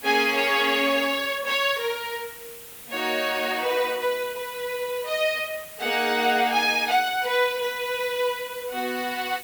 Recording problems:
hiss; slope -1 dB per octave, SNR 15 dB

